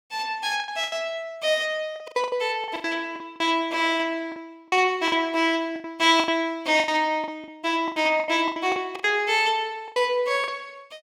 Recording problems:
lost packets; 14% of the sound replaced, filled with the last packet

